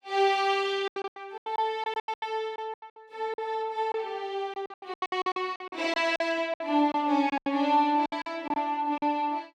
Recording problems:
packet loss; 16% of the sound replaced, filled with silence

